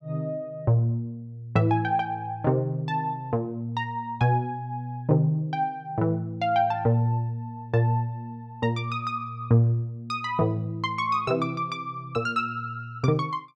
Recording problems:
none

